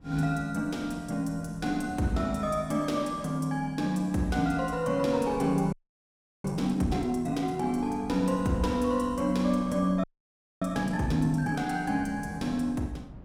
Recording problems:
wind on the microphone; below 260 Hz, SNR 19 dB
audio freezing; at 5.5 s for 0.5 s and at 10 s for 0.5 s

